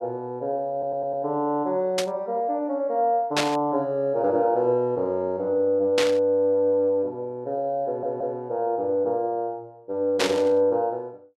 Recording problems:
audio stuttering; at 0.5 s and at 8 s
burst of static; 4 times, first at 2 s; peak +4 dB vs average level

